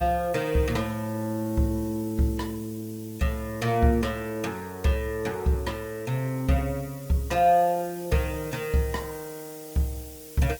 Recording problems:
lossy compression; Opus, log-spectral distance 5 dB, nothing above 19 kHz
background hiss; slope +3 dB per octave, SNR 19 dB

